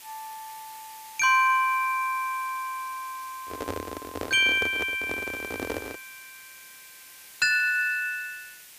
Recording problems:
hiss; SNR 20 dB
handling noise; from 3.5 to 6 s; peak -4 dB vs average level

